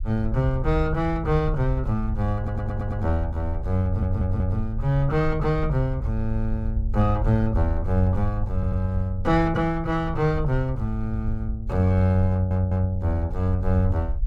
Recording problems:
rumble; below 68 Hz, SNR 7 dB
stutter; 4 times, first at 2.5 s

